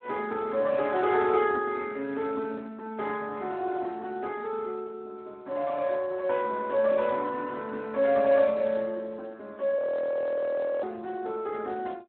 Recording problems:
phone line; 240 Hz to 2.9 kHz, Speex
audio freezing; at 10 s for 1 s

